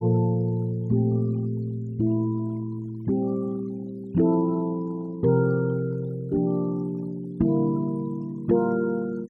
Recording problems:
denoising artefacts; signal-to-artefact ratio 28 dB

